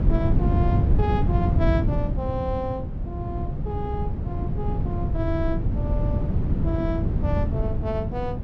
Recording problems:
wind on the microphone; below 160 Hz, SNR -6 dB

